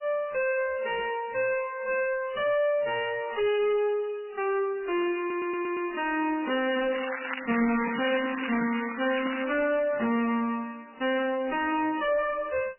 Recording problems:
lossy compression; AAC, then MP3, log-spectral distance 6 dB, nothing above 2.6 kHz
distorted audio; soft clipping, signal-to-distortion ratio 5 dB
audio stuttering; at 5 s
crackling; from 7 to 9.5 s; loose cable, SNR 7 dB

